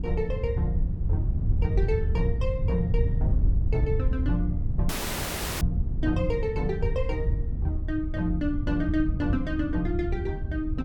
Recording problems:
low-frequency rumble; below 120 Hz, SNR 6 dB
wind on the microphone; below 96 Hz, SNR -1 dB
audio cutting out; at 5 s for 0.5 s

